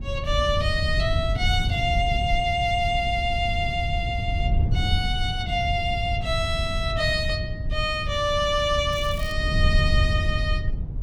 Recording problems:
wind noise; below 100 Hz, SNR 2 dB
crackling; at 9 s; loose cable, SNR 20 dB

